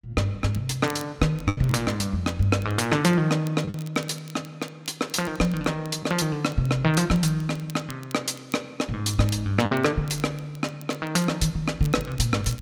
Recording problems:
crackle; vinyl, SNR 24 dB
lost packets; 1.6% of the sound replaced, filled with the last packet

